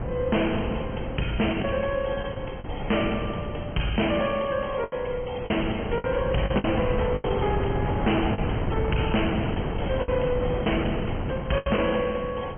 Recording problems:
low-pass filter; nothing above 3.2 kHz
codec artefacts; MP3, log-spectral distance 6 dB
distorted audio; hard clipping, signal-to-distortion ratio 10 dB
wind noise; below 410 Hz, SNR 4 dB
lost packets; 6% of the sound replaced, filled with the last packet

